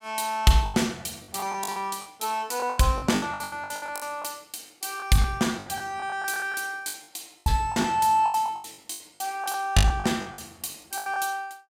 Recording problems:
packet loss; 18% of the sound replaced, filled with the last packet

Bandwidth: 16 kHz